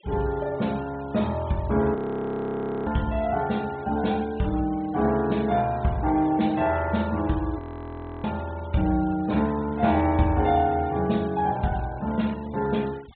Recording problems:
treble cut off; nothing above 4 kHz
noise reduction artefacts; signal-to-artefact ratio 22 dB
audio freezing; at 2 s for 1 s and at 7.5 s for 0.5 s

